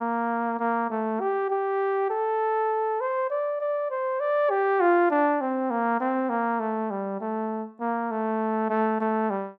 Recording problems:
none

